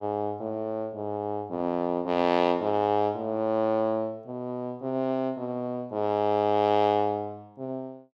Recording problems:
none

